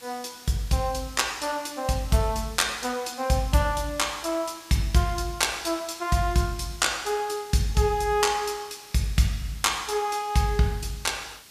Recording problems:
background hiss; slope +1 dB per octave, SNR 20 dB

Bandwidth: 14.5 kHz